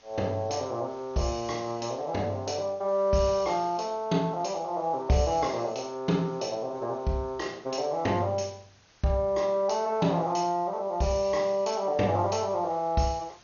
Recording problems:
codec artefacts; MP2, log-spectral distance 5 dB, nothing above 6.7 kHz
background hiss; slope -1 dB per octave, SNR 28 dB

